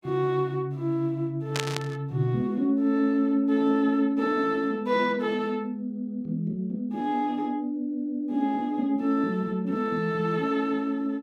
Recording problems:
burst of static; at 1.5 s; peak +1 dB vs average level

